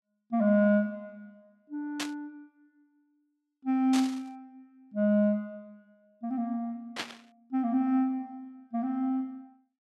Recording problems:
static burst; at 2 s, at 4 s and at 7 s; peak 0 dB vs average level

